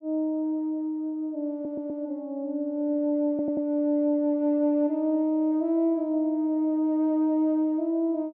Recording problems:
stutter; at 1.5 s and at 3.5 s

